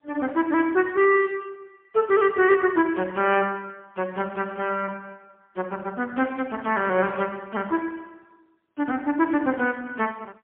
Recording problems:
phone line; 280 Hz to 3.5 kHz, AMR-NB, then MP3

